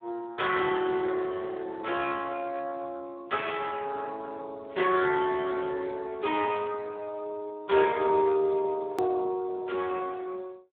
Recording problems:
telephone audio; 280 Hz to 3.6 kHz, Speex
edit click; at 9 s

